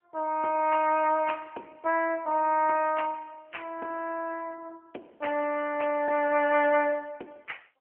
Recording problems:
telephone audio; 260 Hz to 3.1 kHz, AMR-NB

